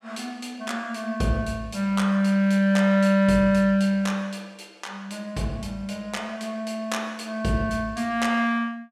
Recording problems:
none

